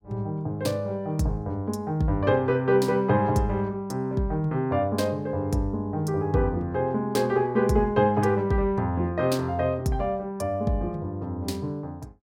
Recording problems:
none

